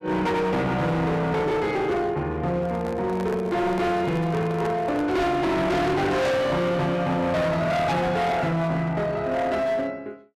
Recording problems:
distorted audio; hard clipping, uneven, signal-to-distortion ratio 6 dB
microphone handling noise; from 2.5 to 5.5 s; peak -8 dB vs average level

